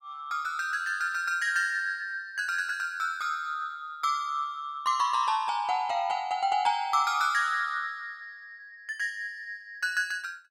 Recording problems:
none

